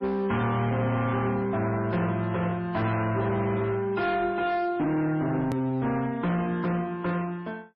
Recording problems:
lossy compression; MP3, log-spectral distance 2 dB, nothing above 13.1 kHz
distorted audio; hard clipping, uneven, signal-to-distortion ratio 10 dB
click at an edit; at 5.5 s

